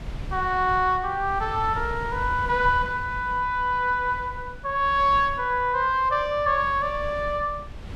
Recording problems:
wind noise; below 140 Hz, SNR 14 dB

